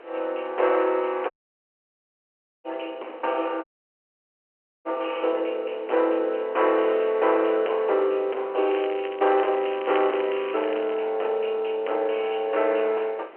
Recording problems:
phone line; 340 Hz to 3.1 kHz, G.711
distorted audio; soft clipping, signal-to-distortion ratio 12 dB
background hiss; SNR 23 dB
audio cutting out; at 1.5 s for 1.5 s and at 3.5 s for 1 s
crackle; from 8.5 to 11 s; loose cable, SNR 16 dB

